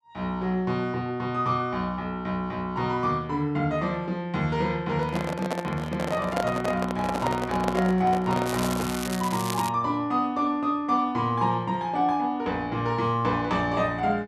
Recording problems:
microphone handling noise; from 5 to 9 s; peak +2 dB vs average level
crackling; from 8.5 to 9.5 s; loose cable, SNR 9 dB

